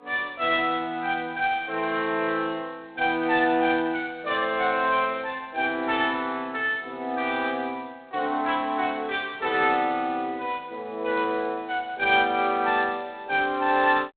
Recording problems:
telephone audio; 340 Hz to 3.9 kHz, G.726

